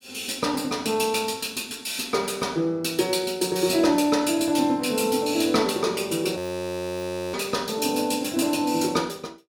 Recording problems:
frozen audio; at 6.5 s for 1 s

